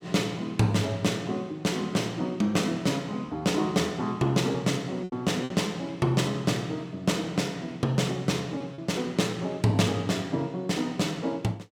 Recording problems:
lost packets; 2% of the sound replaced, filled with repeated pitch periods

